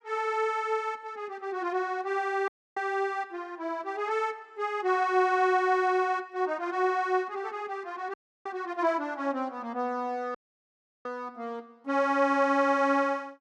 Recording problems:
dropout; at 2.5 s, at 8 s and at 10 s for 0.5 s

